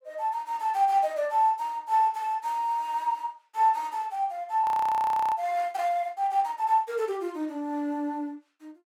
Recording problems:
frozen audio; at 4.5 s for 0.5 s

